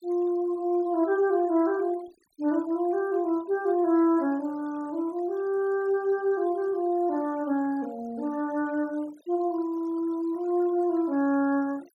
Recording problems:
noise reduction artefacts; signal-to-artefact ratio 26 dB

